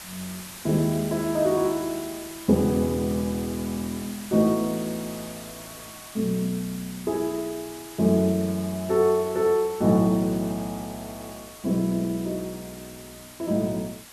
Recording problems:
hiss; slope 0 dB per octave, SNR 15 dB

